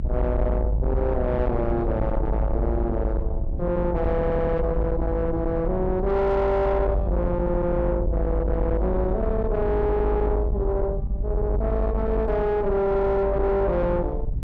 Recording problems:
distorted audio; soft clipping, signal-to-distortion ratio 7 dB
low-frequency rumble; below 110 Hz, strongest tone 52 Hz, SNR 3 dB
audio stuttering; at 4 s

